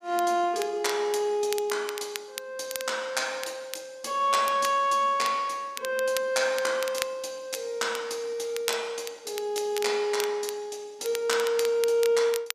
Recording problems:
crackle; vinyl, SNR 12 dB

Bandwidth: 14.5 kHz